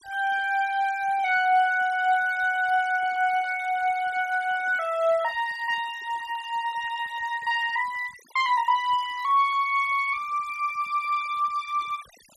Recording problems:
denoising artefacts; signal-to-artefact ratio 21 dB

